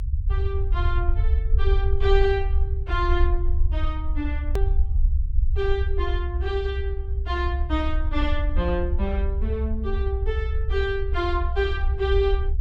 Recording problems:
low-frequency rumble; below 66 Hz, SNR -3 dB
click at an edit; at 4.5 s

